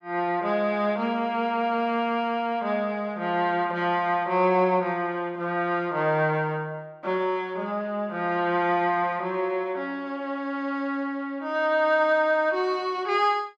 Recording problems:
none

